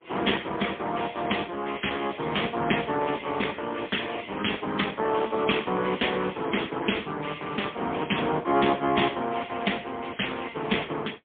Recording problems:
phone line; 190 Hz to 3.4 kHz, AMR-NB, then MP3

